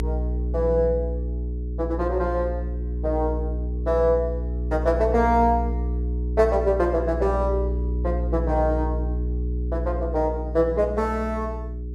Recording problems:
electrical hum; 60 Hz, harmonics up to 420 Hz, SNR 3 dB

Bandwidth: 12.5 kHz